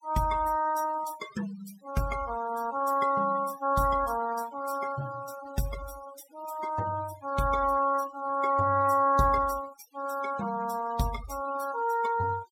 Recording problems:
denoising artefacts; signal-to-artefact ratio 17 dB

